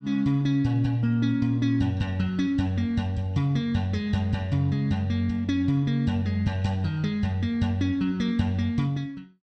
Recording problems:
none

